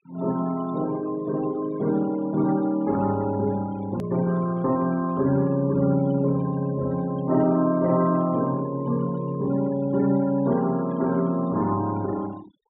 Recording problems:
low-pass filter; nothing above 4 kHz
noise reduction artefacts; signal-to-artefact ratio 21 dB
hard cut with a click; at 4 s

